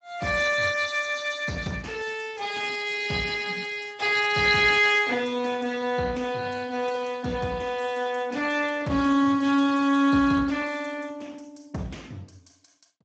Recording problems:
lossy compression; Speex, log-spectral distance 6 dB, nothing above 7.6 kHz

